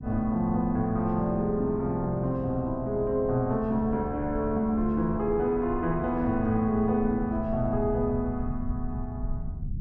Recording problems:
low-frequency rumble; below 110 Hz, SNR 12 dB

